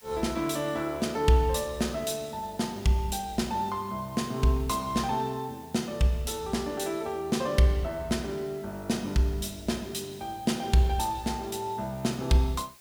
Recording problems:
background hiss; slope 0 dB per octave, SNR 23 dB

